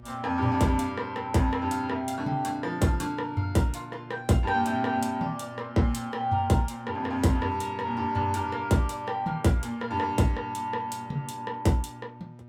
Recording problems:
electrical hum; 60 Hz, harmonics up to 1.2 kHz, SNR 19 dB

